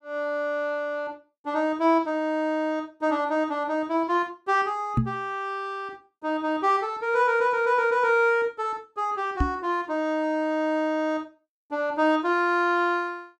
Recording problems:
knock on the microphone; at 5 s and at 9.5 s; peak +6 dB vs average level

